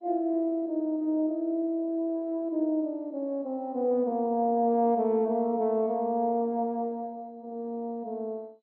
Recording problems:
lossy compression; MP2, log-spectral distance 2 dB

